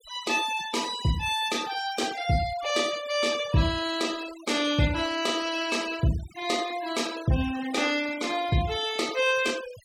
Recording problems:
denoising artefacts; signal-to-artefact ratio 15 dB

